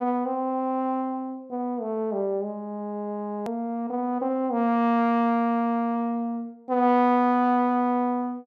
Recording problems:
click at an edit; at 3.5 s

